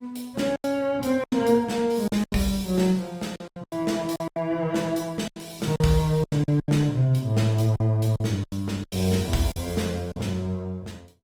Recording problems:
lossy compression; Opus, log-spectral distance 3 dB, nothing above 19 kHz
packet loss; 11% of the sound replaced, filled with silence

